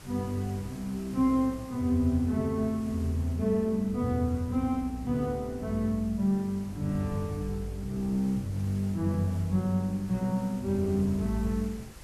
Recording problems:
background hiss; slope -3 dB per octave, SNR 22 dB
wind noise; below 170 Hz, SNR 20 dB

